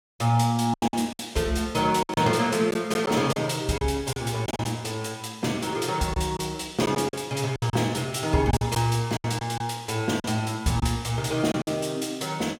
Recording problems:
packet loss; 8% of the sound replaced, filled with silence

